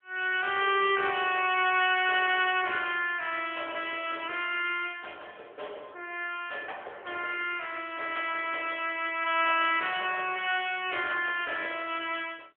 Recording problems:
telephone audio; 340 Hz to 3.3 kHz, AMR-NB

